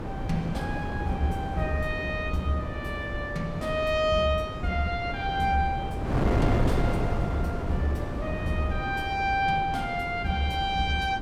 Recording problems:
wind noise; below 400 Hz, SNR 3 dB

